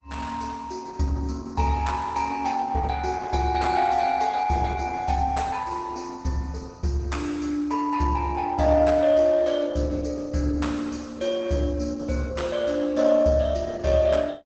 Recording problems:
codec artefacts; Opus, log-spectral distance 4 dB, nothing above 7.8 kHz

